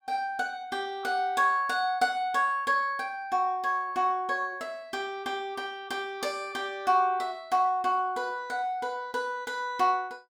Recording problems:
none

